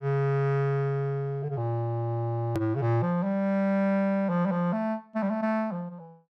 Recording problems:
hard cut with a click; at 2.5 s

